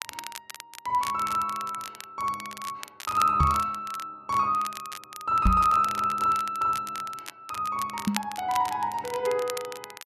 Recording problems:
crackle; vinyl, SNR 14 dB
knock on the microphone; at 3.5 s, at 5.5 s and at 8 s; peak +6 dB vs average level

